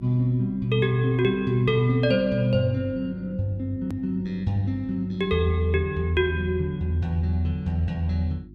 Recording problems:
hum; 50 Hz, harmonics up to 350 Hz, SNR 20 dB
edit click; at 4 s

